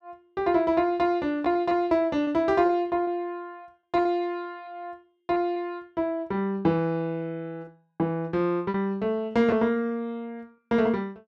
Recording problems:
packet loss; 5% of the sound replaced, filled with repeated pitch periods

